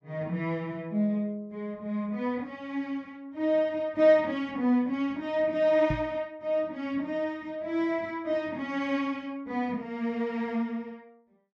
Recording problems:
knock on the microphone; at 6 s; peak +1 dB vs average level

